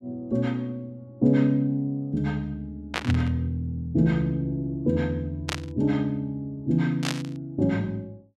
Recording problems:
static burst; at 3 s, at 5.5 s and at 7 s; peak +2 dB vs average level

